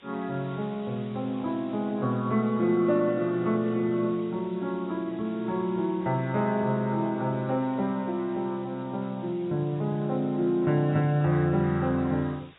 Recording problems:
codec artefacts; AAC, log-spectral distance 6 dB
background hiss; SNR 27 dB

